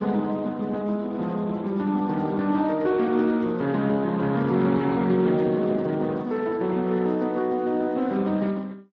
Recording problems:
codec artefacts; Speex, log-spectral distance 3 dB

